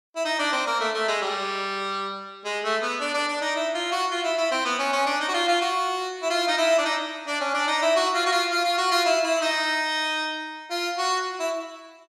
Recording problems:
none

